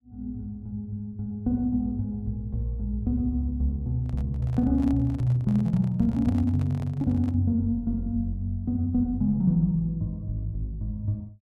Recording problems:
microphone handling noise; from 4 to 7.5 s; peak -11 dB vs average level

